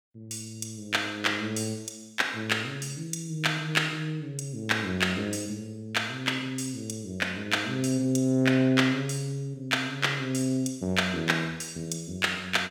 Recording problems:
none

